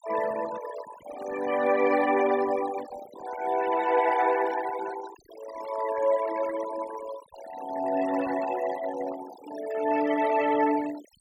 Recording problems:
denoising artefacts; signal-to-artefact ratio 13 dB

